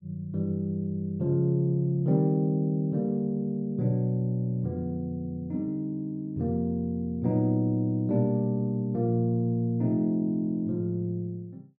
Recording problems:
none

